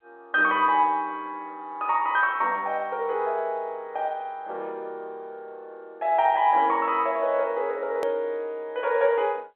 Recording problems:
telephone audio; 340 Hz to 3.4 kHz, G.711
click at an edit; at 8 s

